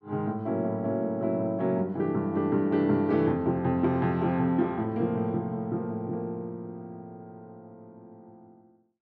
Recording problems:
none

